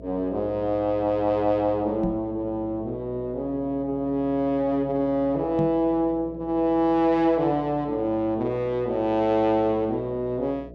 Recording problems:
hum; 60 Hz, harmonics up to 660 Hz, SNR 19 dB
microphone bump; at 2 s and at 5.5 s; peak 0 dB vs average level

